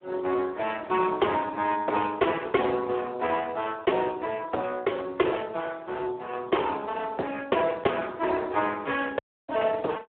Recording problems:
telephone audio; 280 Hz to 3.3 kHz, Speex
audio cutting out; at 9 s

